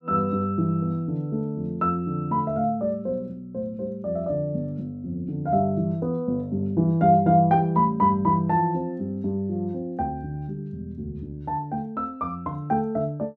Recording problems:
none

